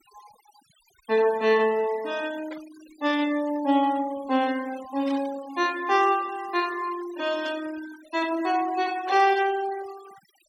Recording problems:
noise reduction artefacts; signal-to-artefact ratio 19 dB
burst of static; 4 times, first at 2.5 s; peak -11 dB vs average level

